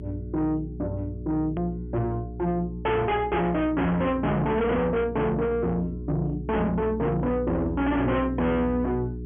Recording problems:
treble missing; nothing above 3.3 kHz
distortion; soft clipping, signal-to-distortion ratio 6 dB
hum; 60 Hz, harmonics up to 420 Hz, SNR 10 dB
click at an edit; at 1.5 s

